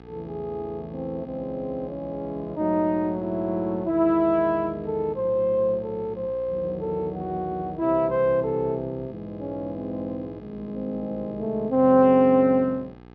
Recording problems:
hum; 60 Hz, harmonics up to 2.5 kHz, SNR 21 dB

